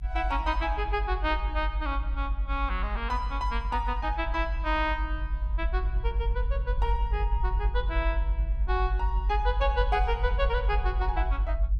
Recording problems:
low-frequency rumble; below 54 Hz, strongest tone 44 Hz, SNR -1 dB

